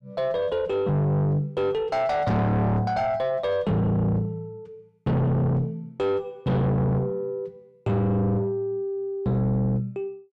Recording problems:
distortion; soft clipping, signal-to-distortion ratio 5 dB

